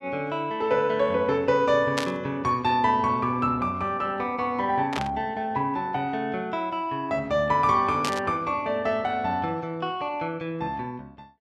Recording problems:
burst of static; at 2 s, at 5 s and at 8 s; peak +1 dB vs average level

